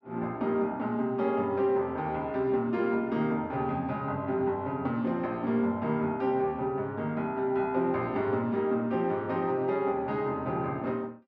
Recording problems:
none

